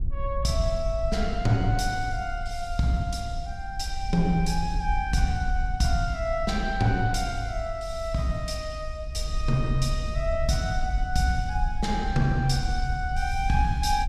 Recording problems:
wind on the microphone; below 60 Hz, SNR 5 dB

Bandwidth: 15 kHz